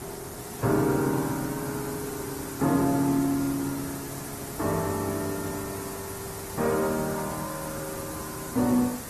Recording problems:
lossy codec; Opus, log-spectral distance 9 dB
hiss; SNR 9 dB

